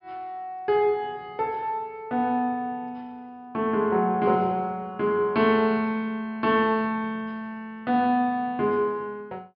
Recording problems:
treble missing; nothing above 5.5 kHz

